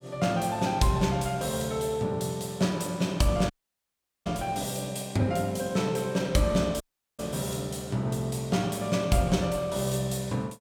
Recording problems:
audio cutting out; at 3.5 s for 1 s and at 7 s

